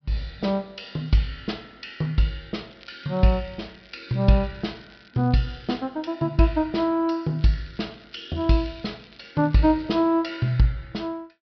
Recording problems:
treble missing; nothing above 5.5 kHz
crackling; from 2.5 to 6 s and from 7.5 to 10 s; loose cable, SNR 27 dB

